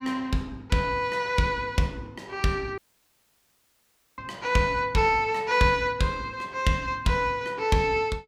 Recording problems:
dropout; at 3 s for 1.5 s

